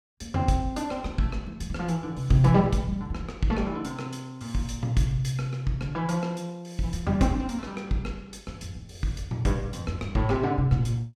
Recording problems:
none

